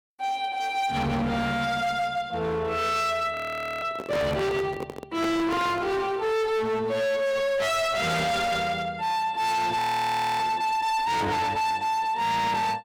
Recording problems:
distorted audio; hard clipping, signal-to-distortion ratio 7 dB
audio freezing; at 3.5 s and at 10 s for 0.5 s
microphone handling noise; from 4 to 6 s; peak -2 dB vs average level

